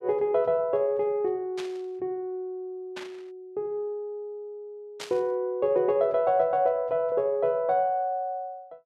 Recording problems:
burst of static; at 1.5 s, at 3 s and at 5 s; peak -6 dB vs average level

